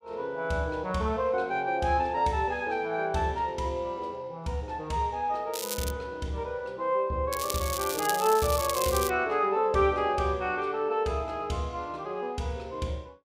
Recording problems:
crackle; at 5.5 s and from 7.5 to 9 s; loose cable, SNR 6 dB

